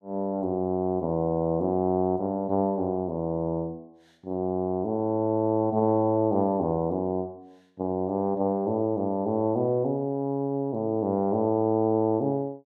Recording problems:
none

